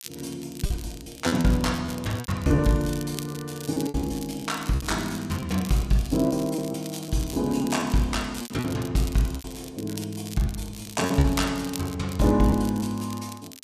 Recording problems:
crackle; vinyl, SNR 15 dB
packet loss; 9% of the sound replaced, filled with repeated pitch periods

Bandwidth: 14.5 kHz